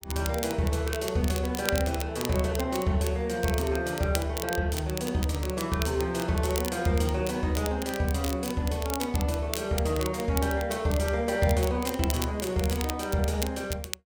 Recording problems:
crackle; vinyl, SNR 10 dB

